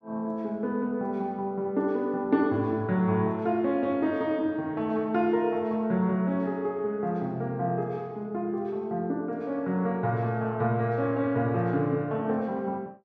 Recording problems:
none

